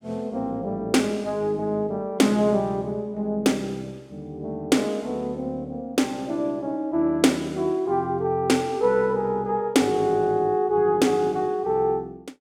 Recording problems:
none

